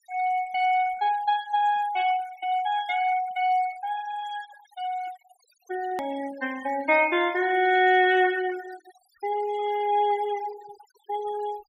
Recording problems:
noise reduction artefacts; signal-to-artefact ratio 20 dB
edit click; at 6 s

